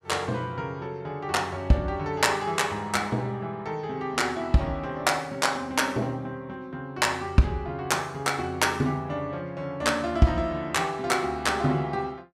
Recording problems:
none

